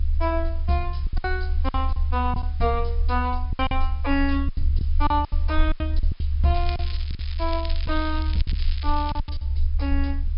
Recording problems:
treble cut off; nothing above 5.5 kHz
background hiss; SNR 27 dB
rumble; below 72 Hz, strongest tone 22 Hz, SNR -1 dB
lost packets; 10% of the sound replaced, filled with silence
crackling; from 6.5 to 9.5 s; loose cable, SNR 11 dB

